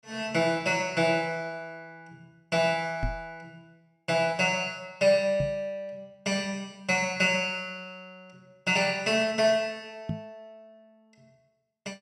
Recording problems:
microphone bump; at 3 s, at 5.5 s and at 10 s; peak -1 dB vs average level

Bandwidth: 13 kHz